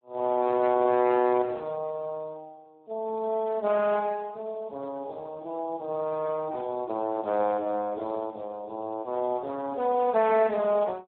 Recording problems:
phone line; 220 Hz to 2.4 kHz, Speex

